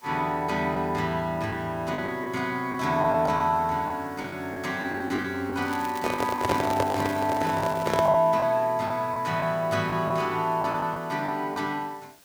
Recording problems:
hiss; slope -1 dB per octave, SNR 26 dB
packet loss; 7% of the sound replaced, filled with the last packet
crackling; from 5.5 to 8 s; loose cable, SNR 17 dB
handling noise; from 6 to 8 s; peak +3 dB vs average level

